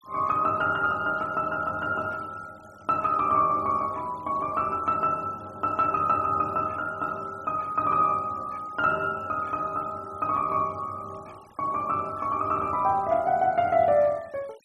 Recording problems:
noise reduction artefacts; signal-to-artefact ratio 28 dB

